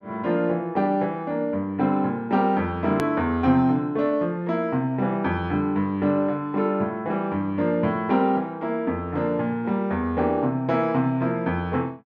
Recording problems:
click at an edit; at 3 s

